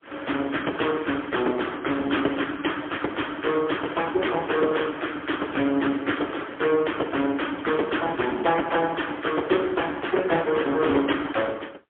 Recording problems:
telephone audio; 280 Hz to 3.3 kHz, AMR-NB, then MP3

